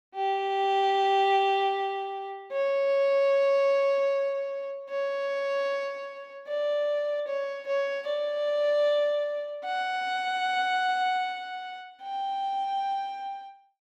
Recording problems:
none

